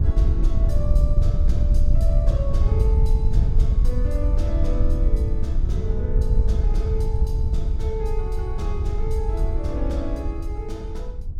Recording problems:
wind noise; below 70 Hz, SNR -11 dB

